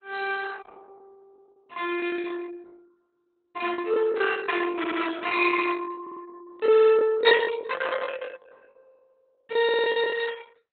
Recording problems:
codec artefacts; Opus, log-spectral distance 5 dB, nothing above 3.9 kHz
lost packets; 16% of the sound replaced, filled with the last packet
audio stuttering; 4 times, first at 5 s

